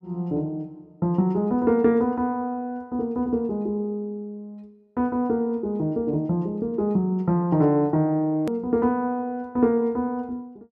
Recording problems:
click at an edit; at 8.5 s

